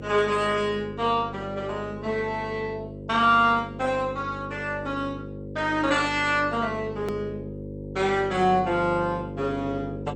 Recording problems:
codec artefacts; Opus, then MP2, log-spectral distance 3 dB
hum; 50 Hz, harmonics up to 550 Hz, SNR 11 dB
edit click; at 7 s

